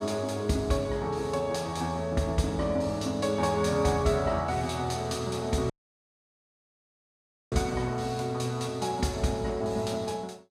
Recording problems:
dropout; at 5.5 s for 2 s

